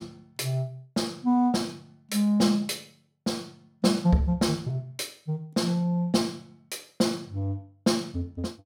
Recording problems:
none

